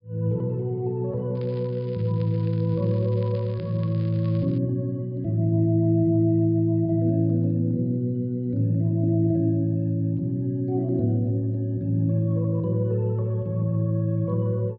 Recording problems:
low-pass filter; nothing above 5.1 kHz
crackle; from 1.5 to 4.5 s; loose cable, SNR 29 dB

